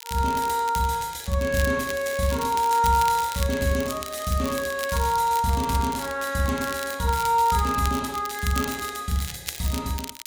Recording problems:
crackling; vinyl, SNR 12 dB

